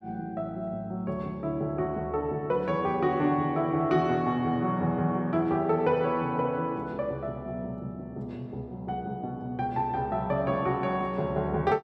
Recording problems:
none

